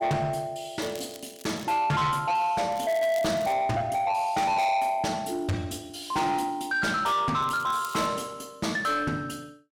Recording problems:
distorted audio; soft clipping, signal-to-distortion ratio 8 dB
crackling; at 1 s, at 2.5 s and at 7.5 s; loose cable, SNR 20 dB

